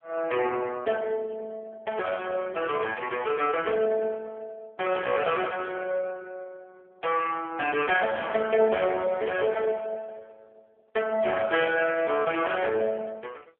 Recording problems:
telephone audio; 280 Hz to 3.2 kHz, AMR-NB

